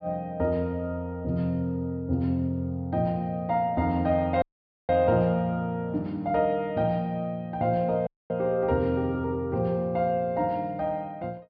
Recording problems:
treble missing; nothing above 5.5 kHz
audio cutting out; at 4.5 s and at 8 s

